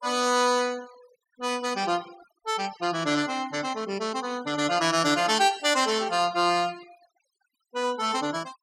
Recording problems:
denoising artefacts; signal-to-artefact ratio 21 dB

